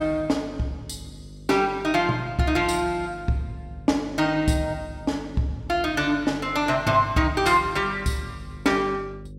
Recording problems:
hum; 50 Hz, harmonics up to 550 Hz, SNR 18 dB

